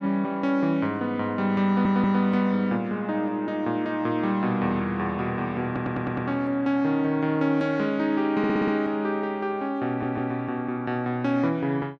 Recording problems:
stutter; 4 times, first at 1.5 s

